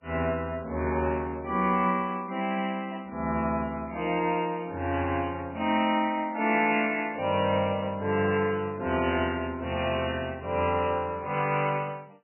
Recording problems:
codec artefacts; MP3, log-spectral distance 4 dB, nothing above 2.4 kHz

